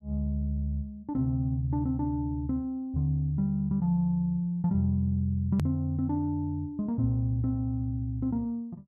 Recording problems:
hard cut with a click; at 5.5 s

